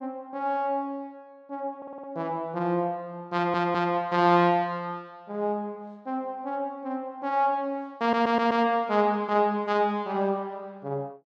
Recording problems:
stutter; at 2 s, at 3.5 s and at 8 s

